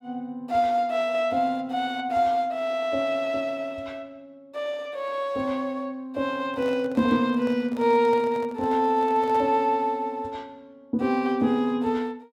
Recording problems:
microphone handling noise; from 6.5 to 9.5 s; peak -10 dB vs average level

